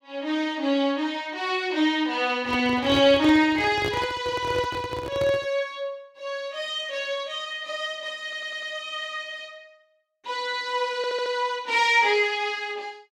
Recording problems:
handling noise; from 2.5 to 5.5 s; peak -3 dB vs average level
stutter; at 8 s and at 11 s

